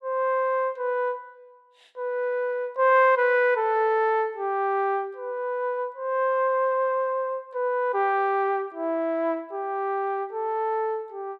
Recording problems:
none

